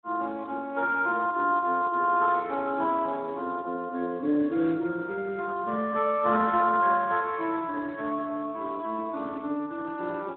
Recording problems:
telephone audio; 240 Hz to 3.9 kHz, Speex

